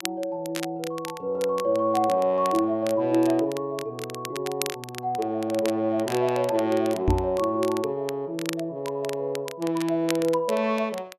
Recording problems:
crackling; vinyl, SNR 14 dB
knock on the microphone; at 7 s; peak +6 dB vs average level

